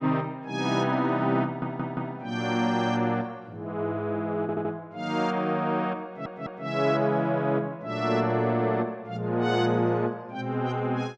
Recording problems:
stutter; at 1.5 s, at 4.5 s and at 6 s

